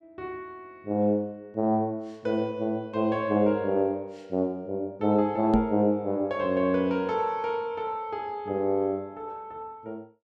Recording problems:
knock on the microphone; at 5.5 s; peak +6 dB vs average level

